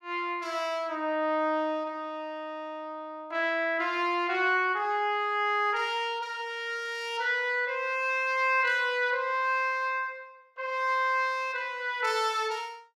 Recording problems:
none

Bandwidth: 16 kHz